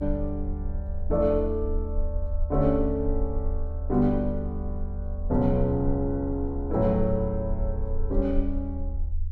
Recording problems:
rumble; below 76 Hz, SNR 5 dB

